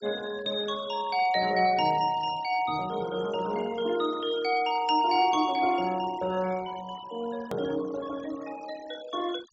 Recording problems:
treble cut off; nothing above 8 kHz
denoising artefacts; signal-to-artefact ratio 19 dB
click at an edit; at 7.5 s

